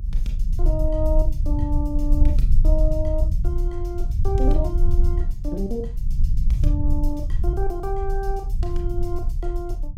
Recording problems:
low-frequency rumble; below 56 Hz, SNR -6 dB

